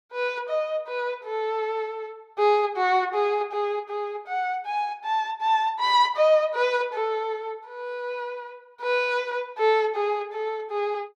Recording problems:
none

